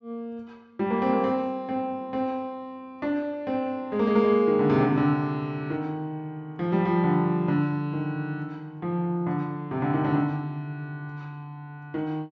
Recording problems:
treble cut off; nothing above 7.7 kHz

